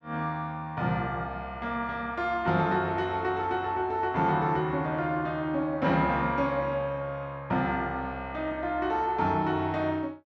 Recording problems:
none

